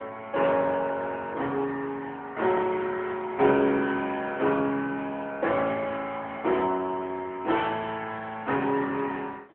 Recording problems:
phone line; 240 Hz to 3.4 kHz, AMR-NB

